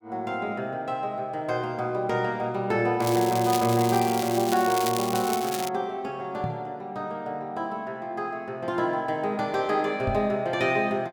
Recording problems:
crackle; from 3 to 5.5 s; loose cable, SNR 7 dB
microphone thump; at 6.5 s and at 10 s; peak 0 dB vs average level

